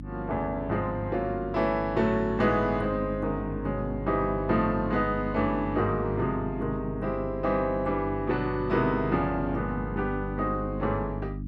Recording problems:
electrical hum; 50 Hz, harmonics up to 300 Hz, SNR 8 dB

